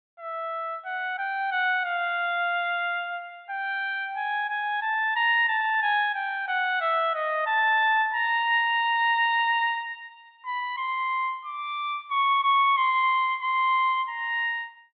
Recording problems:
treble missing; nothing above 4 kHz

